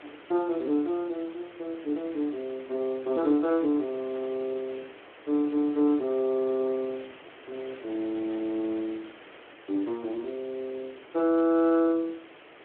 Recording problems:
phone line; 260 Hz to 4 kHz, Speex
background hiss; SNR 19 dB

